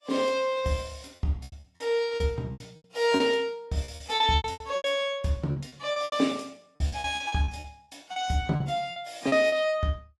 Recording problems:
codec artefacts; AAC, log-spectral distance 2 dB, nothing above 11.3 kHz
packet loss; 14% of the sound replaced, filled with repeated pitch periods

